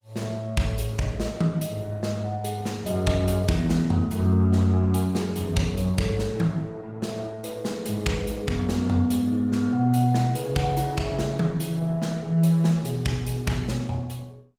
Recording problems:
codec artefacts; Opus, log-spectral distance 3 dB

